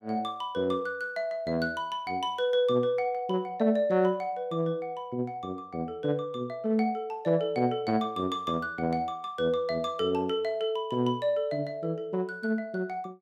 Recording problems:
none

